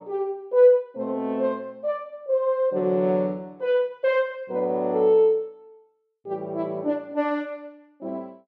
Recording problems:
none

